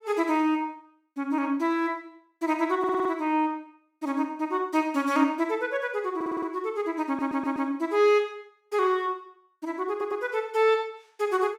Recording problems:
stutter; 4 times, first at 3 s

